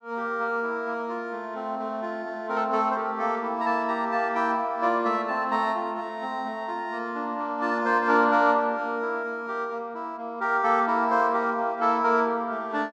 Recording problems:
none

